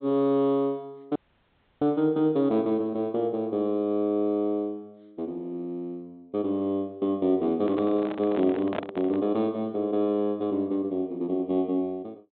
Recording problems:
treble missing; nothing above 4 kHz
dropout; at 1 s for 0.5 s
handling noise; from 7.5 to 9 s; peak 0 dB vs average level

